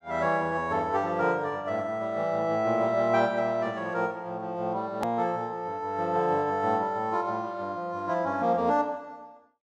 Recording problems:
edit click; at 5 s

